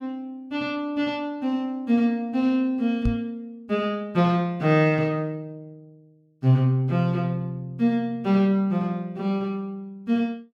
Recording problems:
knock on the microphone; at 3 s; peak +2 dB vs average level

